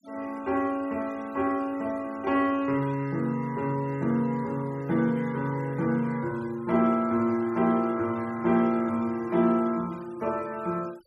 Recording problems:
noise reduction artefacts; signal-to-artefact ratio 26 dB

